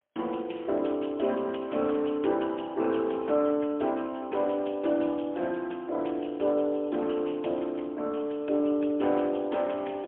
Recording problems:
phone line; 240 Hz to 3.4 kHz, AMR-NB, then MP3

